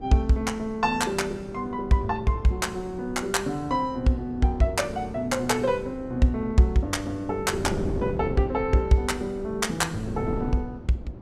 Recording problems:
wind noise; below 350 Hz, SNR 11 dB

